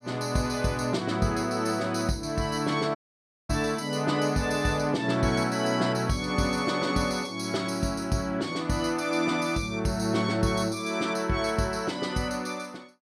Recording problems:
audio cutting out; at 3 s for 0.5 s

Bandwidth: 14.5 kHz